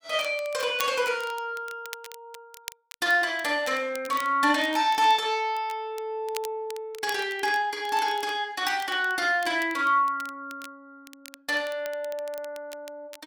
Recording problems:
crackle; vinyl, SNR 19 dB

